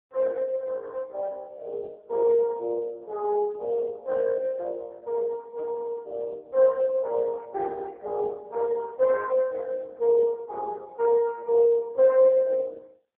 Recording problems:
telephone audio; 320 Hz to 2.1 kHz, AMR-NB

